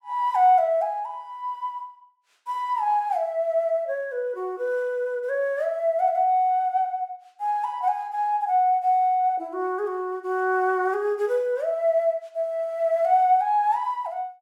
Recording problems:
none

